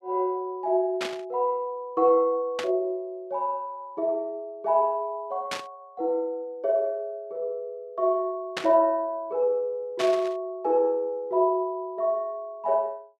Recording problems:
burst of static; 5 times, first at 1 s; peak 0 dB vs average level

